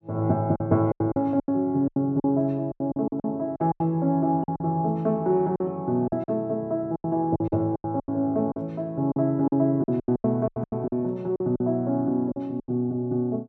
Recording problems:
lost packets; 14% of the sound replaced, filled with silence

